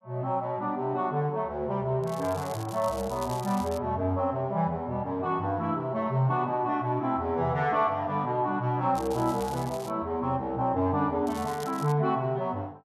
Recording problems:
crackling; from 2 to 4 s, at 9 s and at 11 s; loose cable, SNR 18 dB

